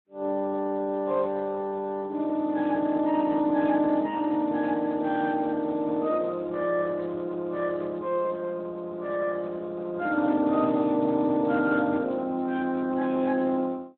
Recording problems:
telephone audio; 240 Hz to 2.5 kHz, Speex

